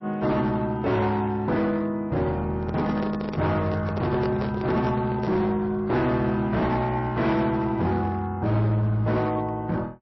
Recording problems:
lossy codec; MP3, then MP3, log-spectral distance 2 dB, nothing above 5.7 kHz
distorted audio; hard clipping, uneven, signal-to-distortion ratio 11 dB
handling noise; from 2.5 to 5.5 s; peak -2 dB vs average level

